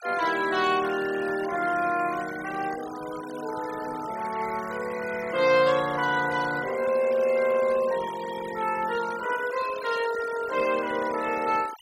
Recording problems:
noise reduction artefacts; signal-to-artefact ratio 15 dB

